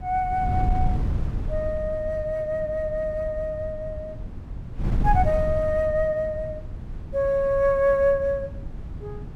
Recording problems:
wind on the microphone; below 110 Hz, SNR 7 dB

